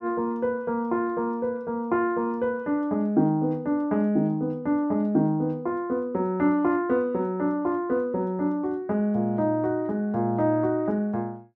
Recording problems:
none

